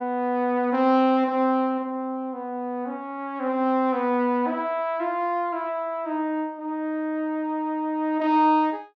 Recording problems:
none

